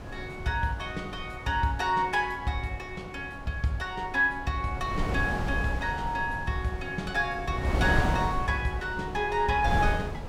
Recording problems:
wind noise; below 430 Hz, SNR 6 dB

